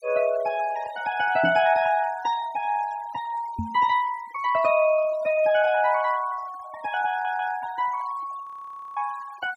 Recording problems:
noise reduction artefacts; signal-to-artefact ratio 18 dB
knock on the microphone; at 1.5 s and at 3.5 s; peak -1 dB vs average level
stutter; at 7 s
frozen audio; at 8.5 s for 0.5 s

